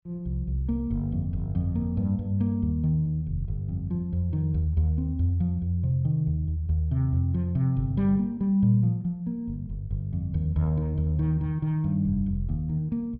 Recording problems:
low-pass filter; nothing above 5.5 kHz

